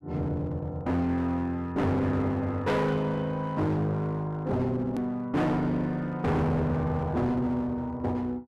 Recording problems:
distorted audio; hard clipping, uneven, signal-to-distortion ratio 6 dB
hard cut with a click; at 5 s

